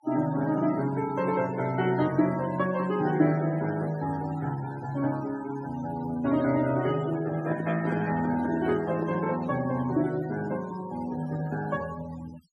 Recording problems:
denoising artefacts; signal-to-artefact ratio 17 dB
microphone handling noise; from 7.5 to 9 s; peak -2 dB vs average level

